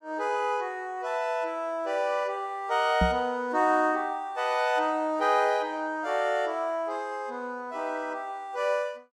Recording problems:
microphone bump; at 3 s; peak +5 dB vs average level

